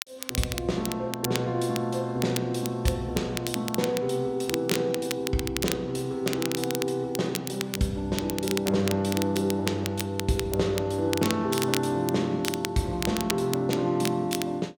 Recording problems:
crackling; vinyl, SNR 7 dB

